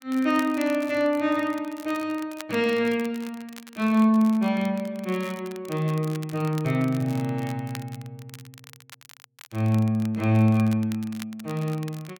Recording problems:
crackle; vinyl, SNR 20 dB

